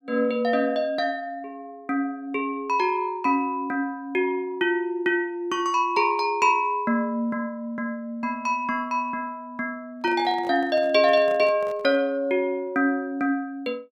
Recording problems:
microphone handling noise; from 10 to 12 s; peak -11 dB vs average level

